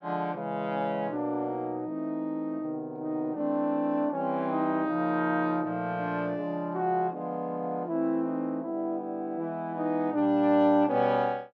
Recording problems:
none

